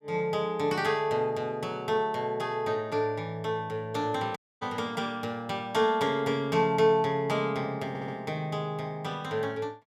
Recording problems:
dropout; at 4.5 s
audio stuttering; at 8 s

